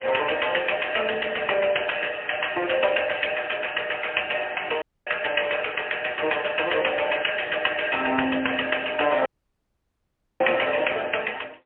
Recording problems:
phone line; 280 Hz to 3.2 kHz, AMR-NB, then MP3
dropout; at 5 s and at 9.5 s for 1 s

